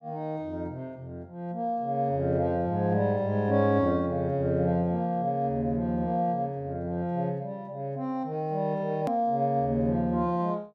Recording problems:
edit click; at 9 s

